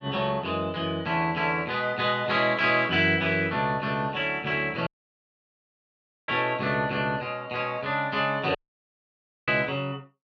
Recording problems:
audio cutting out; at 5 s for 1.5 s and at 8.5 s for 1 s

